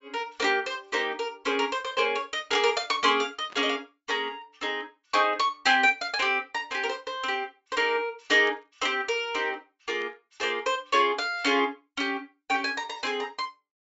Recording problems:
treble missing; nothing above 8 kHz
static burst; at 3.5 s, at 8.5 s and at 10 s; peak -15 dB vs average level

